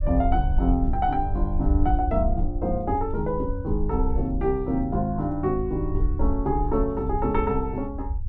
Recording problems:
low-frequency rumble; below 66 Hz, SNR 3 dB

